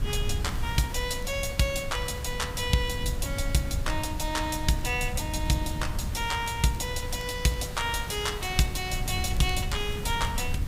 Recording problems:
hiss; slope -3 dB per octave, SNR 14 dB
wind noise; below 100 Hz, SNR 6 dB
crackling; vinyl, SNR 26 dB

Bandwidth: 15.5 kHz